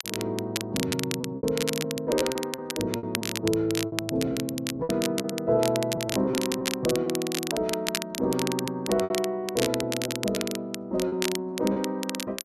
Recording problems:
crackle; vinyl, SNR 5 dB
packet loss; 9% of the sound replaced, filled with repeated pitch periods

